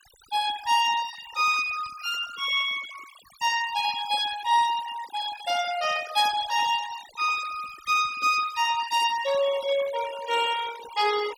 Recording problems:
denoising artefacts; signal-to-artefact ratio 14 dB

